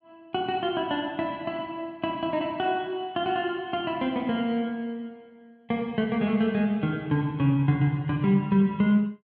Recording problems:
none

